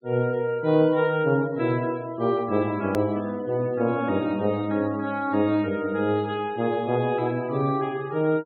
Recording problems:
treble cut off; nothing above 4.4 kHz
denoising artefacts; signal-to-artefact ratio 25 dB
hard cut with a click; at 3 s

